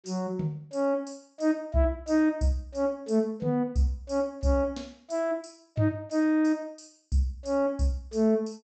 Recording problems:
treble missing; nothing above 8 kHz

